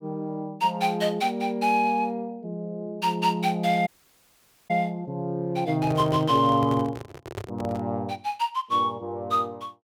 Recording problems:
dropout; at 4 s for 1 s
handling noise; from 5.5 to 8 s; peak -4 dB vs average level

